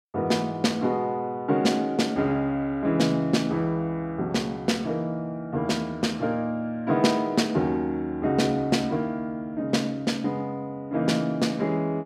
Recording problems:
none

